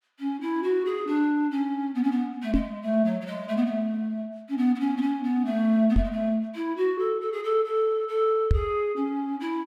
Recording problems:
microphone thump; at 2.5 s, at 6 s and at 8.5 s; peak +7 dB vs average level

